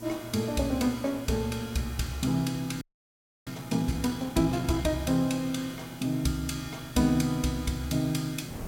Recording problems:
mains hum; 60 Hz, harmonics up to 960 Hz, SNR 20 dB
hiss; SNR 21 dB
wind noise; below 530 Hz, SNR 23 dB
frozen audio; at 3 s for 0.5 s

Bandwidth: 16.5 kHz